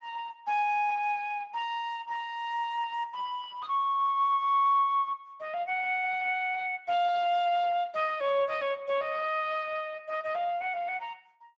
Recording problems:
lossy codec; Speex, log-spectral distance 3 dB

